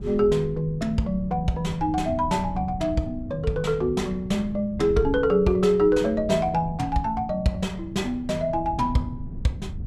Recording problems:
wind noise; below 150 Hz, SNR 12 dB

